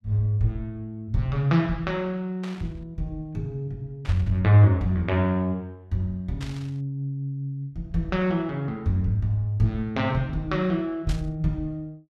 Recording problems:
static burst; 4 times, first at 2.5 s; peak -8 dB vs average level

